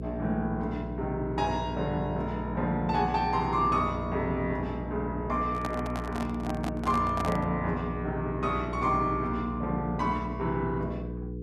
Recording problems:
hum; 60 Hz, harmonics up to 480 Hz, SNR 6 dB
handling noise; from 5.5 to 7.5 s; peak -1 dB vs average level

